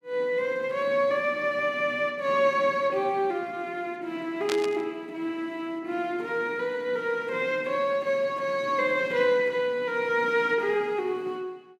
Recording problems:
burst of static; at 4.5 s; peak -1 dB vs average level

